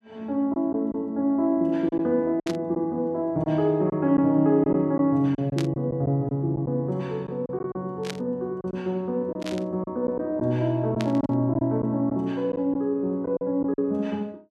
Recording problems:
packet loss; 6% of the sound replaced, filled with silence
static burst; 5 times, first at 2.5 s; peak -4 dB vs average level

